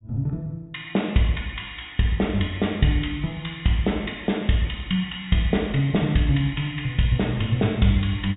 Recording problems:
treble missing; nothing above 4 kHz

